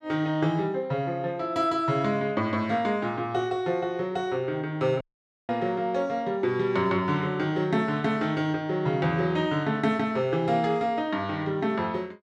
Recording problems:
audio cutting out; at 5 s

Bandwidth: 12.5 kHz